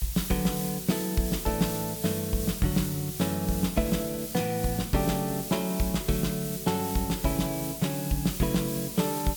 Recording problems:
hiss; slope +5 dB per octave, SNR 7 dB

